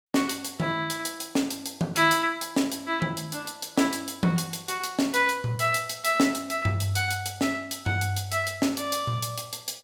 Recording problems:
none

